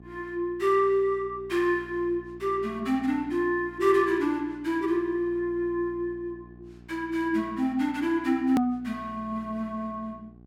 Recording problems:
mains hum; 60 Hz, harmonics up to 840 Hz, SNR 22 dB
edit click; at 8.5 s

